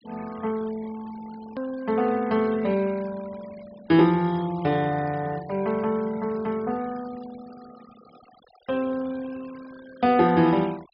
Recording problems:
low-pass filter; nothing above 5.5 kHz
noise reduction artefacts; signal-to-artefact ratio 24 dB
click at an edit; at 1.5 s

